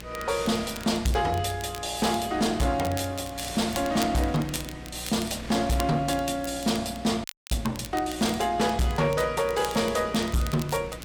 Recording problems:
distortion; hard clipping, signal-to-distortion ratio 11 dB
mains hum; 60 Hz, harmonics up to 360 Hz, SNR 18 dB
wind on the microphone; below 2.7 kHz, SNR 18 dB
crackling; vinyl, SNR 16 dB
frozen audio; at 7 s

